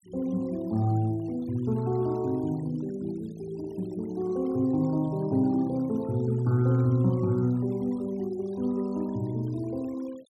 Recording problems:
denoising artefacts; signal-to-artefact ratio 27 dB

